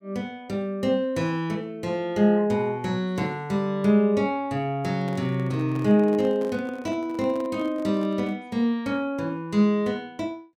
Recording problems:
microphone handling noise; from 5 to 8.5 s; peak -11 dB vs average level

